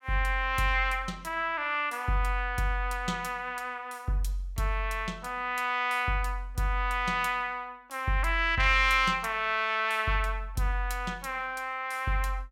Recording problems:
none

